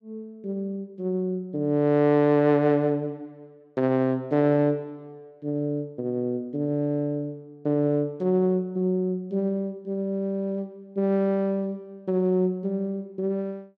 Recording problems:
none

